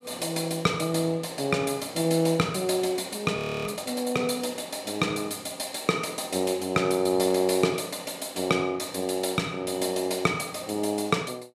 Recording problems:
audio freezing; at 3.5 s

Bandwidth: 15 kHz